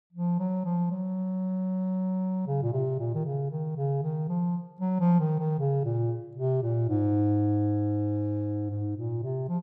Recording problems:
none

